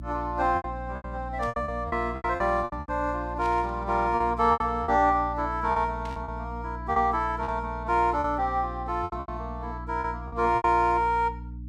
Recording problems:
hum; 60 Hz, harmonics up to 300 Hz, SNR 12 dB
lost packets; 12% of the sound replaced, filled with repeated pitch periods
static burst; 4 times, first at 1.5 s; peak -14 dB vs average level

